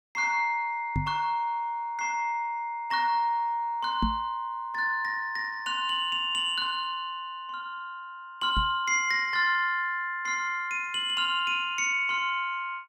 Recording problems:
microphone thump; at 1 s, at 4 s and at 8.5 s; peak +3 dB vs average level

